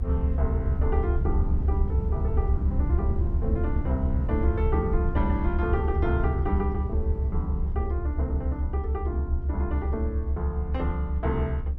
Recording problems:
rumble; below 76 Hz, SNR -5 dB

